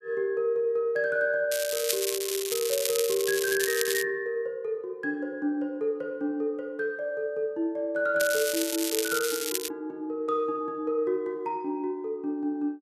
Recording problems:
crackle; from 1.5 to 4 s and from 8 to 9.5 s; loose cable, SNR 2 dB

